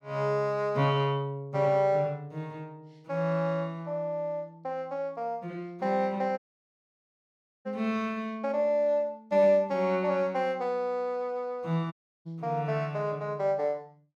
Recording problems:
audio cutting out; at 6.5 s for 1.5 s and at 12 s

